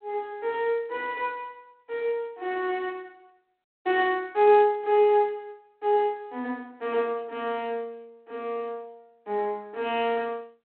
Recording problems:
telephone audio; 260 Hz to 3.3 kHz, G.726

